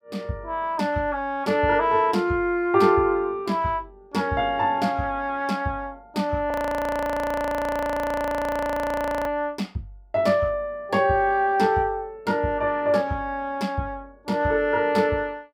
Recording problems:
audio freezing; at 6.5 s for 3 s

